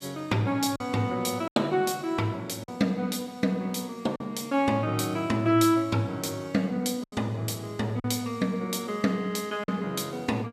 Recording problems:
lost packets; 3% of the sound replaced, filled with silence

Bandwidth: 15 kHz